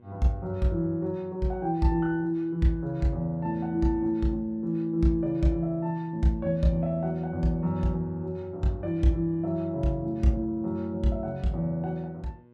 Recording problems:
hum; 60 Hz, harmonics up to 1.1 kHz, SNR 29 dB

